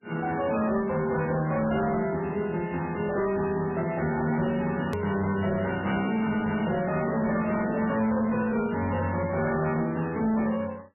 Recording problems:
lossy codec; MP3, log-spectral distance 4 dB, nothing above 13.1 kHz
distorted audio; hard clipping, signal-to-distortion ratio 12 dB
edit click; at 5 s

